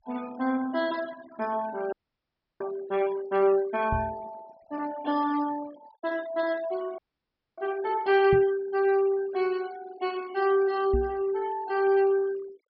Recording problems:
treble cut off; nothing above 5.6 kHz
noise reduction artefacts; signal-to-artefact ratio 20 dB
audio freezing; at 2 s for 0.5 s and at 7 s for 0.5 s
microphone bump; at 4 s, at 8.5 s and at 11 s; peak +1 dB vs average level

